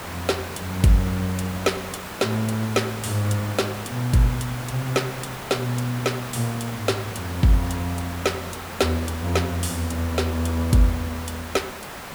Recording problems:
background hiss; SNR 9 dB

